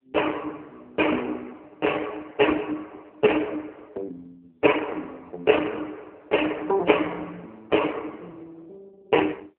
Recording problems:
phone line; 240 Hz to 3 kHz, AMR-NB

